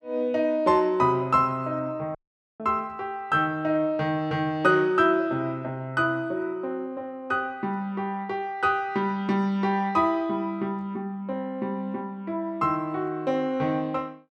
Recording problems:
audio cutting out; at 2 s

